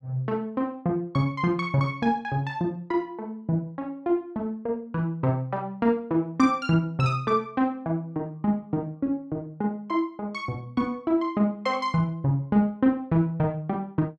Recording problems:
none

